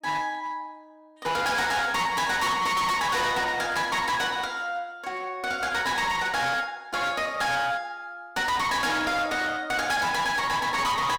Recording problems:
distortion; hard clipping, uneven, signal-to-distortion ratio 6 dB

